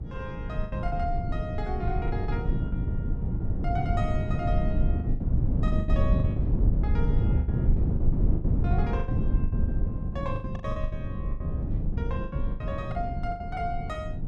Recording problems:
wind on the microphone; below 130 Hz, SNR -8 dB
lost packets; 13% of the sound replaced, filled with the last packet

